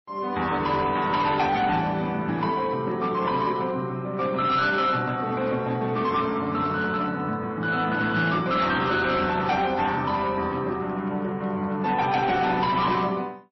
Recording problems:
codec artefacts; MP3, then MP3, log-spectral distance 2 dB, nothing above 5.7 kHz
distorted audio; hard clipping, signal-to-distortion ratio 12 dB

